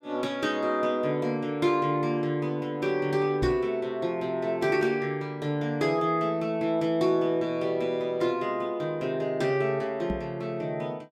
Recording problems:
microphone thump; at 3.5 s and at 10 s; peak 0 dB vs average level

